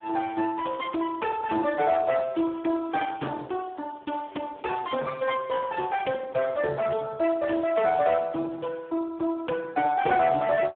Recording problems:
phone line; 190 Hz to 3.5 kHz, Speex

